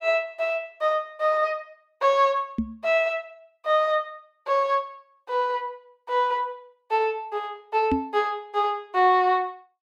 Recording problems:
microphone thump; at 2.5 s and at 8 s; peak +3 dB vs average level

